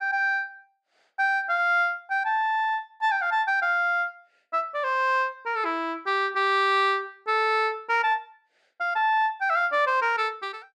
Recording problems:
none

